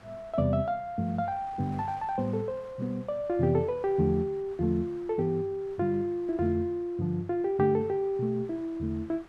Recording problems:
wind noise; below 1.6 kHz, SNR 25 dB

